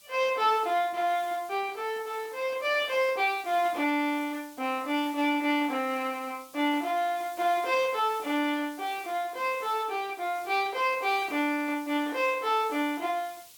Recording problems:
background hiss; SNR 21 dB

